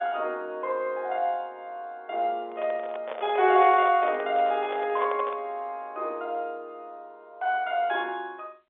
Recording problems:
phone line; 320 Hz to 3.8 kHz, G.711
handling noise; from 2.5 to 5.5 s; peak -5 dB vs average level

